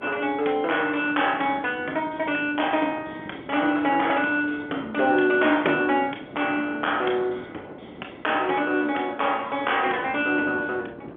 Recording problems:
telephone audio; 240 Hz to 3.4 kHz, G.711
wind on the microphone; below 520 Hz, SNR 18 dB

